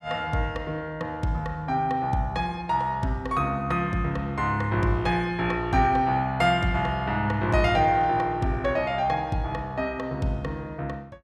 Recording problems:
none

